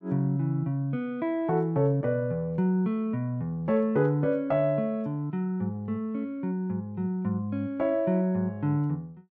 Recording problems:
none

